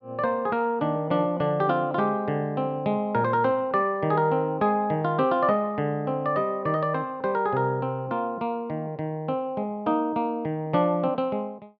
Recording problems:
none

